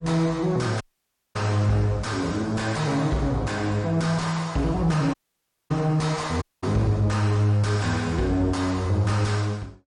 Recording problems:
lossy codec; MP3, log-spectral distance 2 dB, nothing above 10.4 kHz
distortion; soft clipping, signal-to-distortion ratio 11 dB
audio cutting out; at 1 s for 0.5 s, at 5 s for 0.5 s and at 6.5 s

